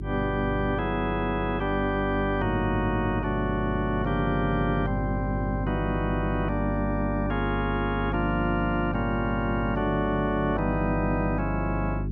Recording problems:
electrical hum; 50 Hz, harmonics up to 400 Hz, SNR 4 dB

